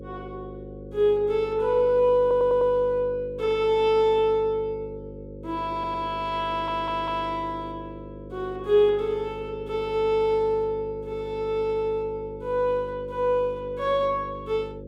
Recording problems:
hum; 50 Hz, harmonics up to 550 Hz, SNR 15 dB
stutter; at 2 s, at 5.5 s and at 6.5 s

